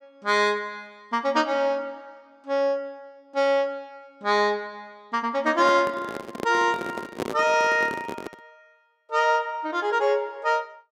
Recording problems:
microphone handling noise; from 5.5 to 8.5 s; peak -1 dB vs average level

